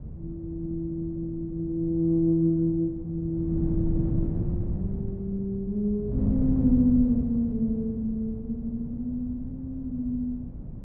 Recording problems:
wind noise; below 180 Hz, SNR 6 dB

